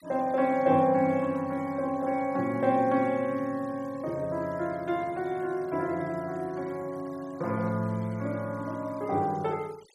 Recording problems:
noise reduction artefacts; signal-to-artefact ratio 26 dB

